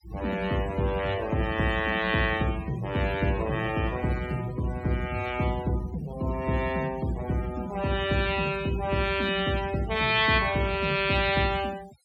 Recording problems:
noise reduction artefacts; signal-to-artefact ratio 17 dB

